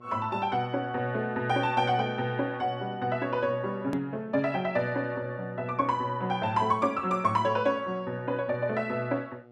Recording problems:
hum; 60 Hz, harmonics up to 1.4 kHz, SNR 24 dB
edit click; at 4 s

